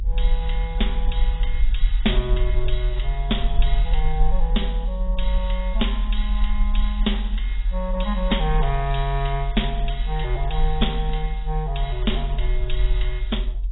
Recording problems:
codec artefacts; AAC, log-spectral distance 4 dB, nothing above 3.8 kHz
rumble; below 44 Hz, SNR -3 dB

